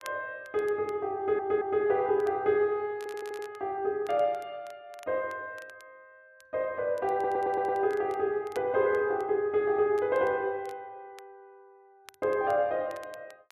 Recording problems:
crackle; vinyl, SNR 27 dB
audio stuttering; at 1 s, at 3 s and at 7 s

